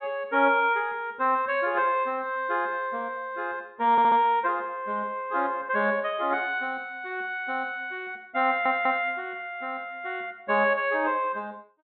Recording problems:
treble cut off; nothing above 4 kHz
audio stuttering; at 4 s and at 8.5 s

